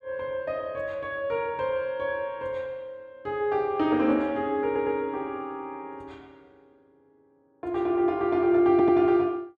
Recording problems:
audio stuttering; at 4.5 s and at 8.5 s

